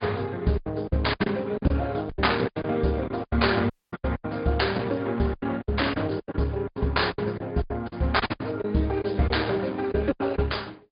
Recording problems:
low-pass filter; nothing above 4.9 kHz
lossy codec; Opus, log-spectral distance 4 dB
lost packets; 14% of the sound replaced, filled with silence
audio cutting out; at 3.5 s

